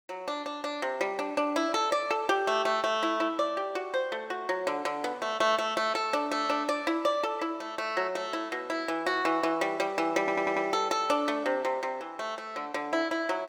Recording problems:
audio stuttering; at 10 s

